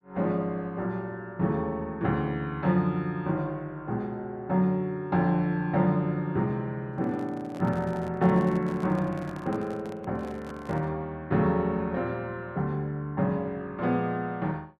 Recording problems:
microphone handling noise; from 7 to 11 s; peak -11 dB vs average level

